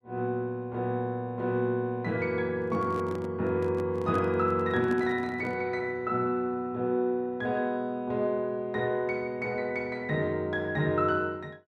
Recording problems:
handling noise; from 2.5 to 5.5 s; peak -5 dB vs average level

